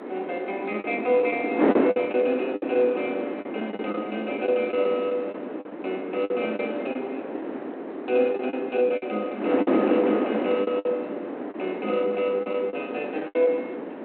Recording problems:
phone line; 240 Hz to 3.4 kHz, G.726
wind noise; below 590 Hz, SNR 3 dB
packet loss; 8% of the sound replaced, filled with the last packet

